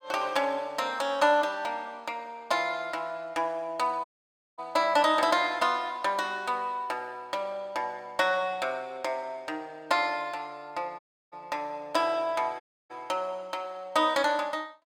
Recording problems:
audio cutting out; at 4 s for 0.5 s, at 11 s and at 13 s

